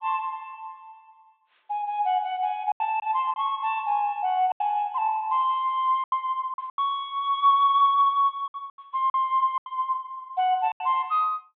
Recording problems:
low-pass filter; nothing above 4 kHz
packet loss; 7% of the sound replaced, filled with silence

